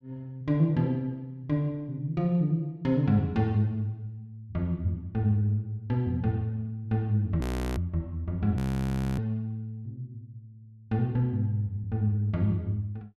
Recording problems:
frozen audio; at 7.5 s and at 8.5 s for 0.5 s

